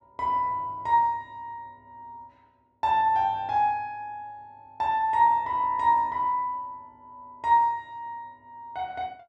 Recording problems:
none

